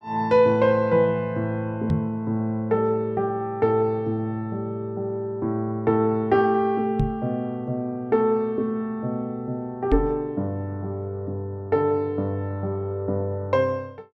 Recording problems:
microphone bump; at 2 s, at 7 s and at 10 s; peak +5 dB vs average level

